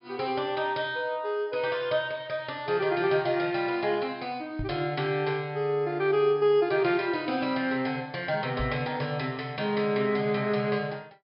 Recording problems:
treble missing; nothing above 5.5 kHz
microphone bump; at 4.5 s and at 8.5 s; peak -4 dB vs average level

